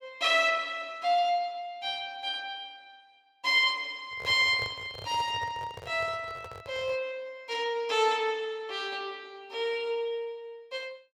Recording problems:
handling noise; from 4 to 7 s; peak -7 dB vs average level

